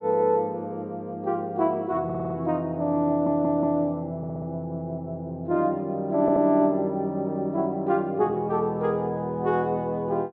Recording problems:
audio stuttering; 4 times, first at 2 s

